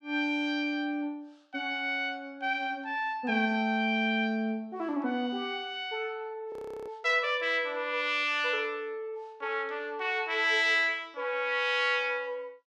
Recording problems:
audio freezing; at 6.5 s

